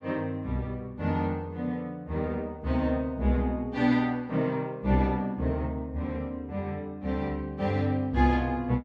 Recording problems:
none

